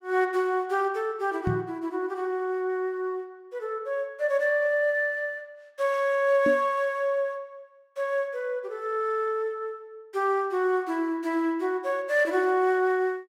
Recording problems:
knock on the microphone; at 1.5 s and at 6.5 s; peak +1 dB vs average level

